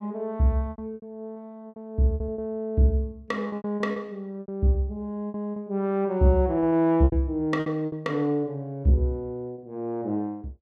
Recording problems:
lost packets; 10% of the sound replaced, filled with repeated pitch periods

